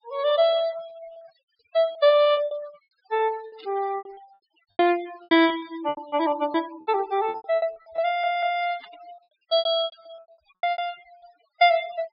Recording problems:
treble cut off; nothing above 5.5 kHz
noise reduction artefacts; signal-to-artefact ratio 20 dB
packet loss; 16% of the sound replaced, filled with repeated pitch periods
burst of static; at 3.5 s and at 9 s; peak -19 dB vs average level
stutter; at 8 s

